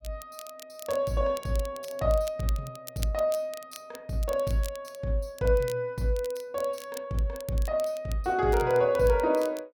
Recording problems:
crackling; vinyl, SNR 18 dB

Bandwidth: 17.5 kHz